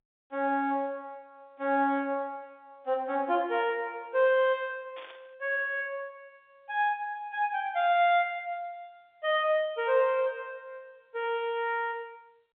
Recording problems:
phone line; 300 Hz to 3.6 kHz, G.711
burst of static; at 5 s; peak -14 dB vs average level

